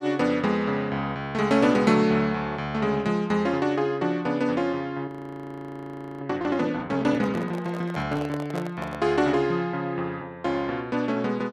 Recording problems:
frozen audio; at 5 s for 1 s
microphone handling noise; from 7 to 9 s; peak -5 dB vs average level

